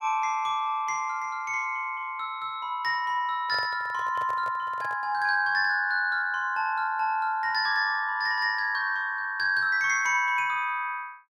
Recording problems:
microphone handling noise; from 3.5 to 5 s; peak -10 dB vs average level

